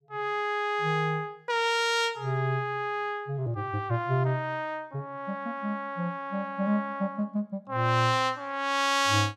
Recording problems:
none

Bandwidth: 14.5 kHz